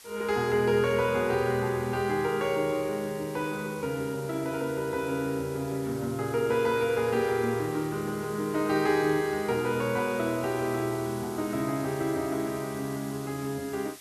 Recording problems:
background hiss; slope +1 dB per octave, SNR 18 dB

